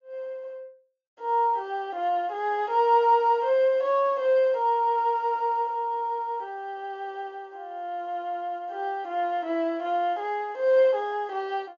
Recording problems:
low-pass filter; nothing above 7 kHz

